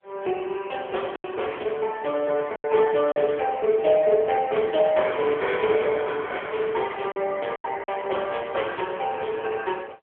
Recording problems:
telephone audio; 320 Hz to 3.4 kHz, AMR-NB
packet loss; 4% of the sound replaced, filled with silence

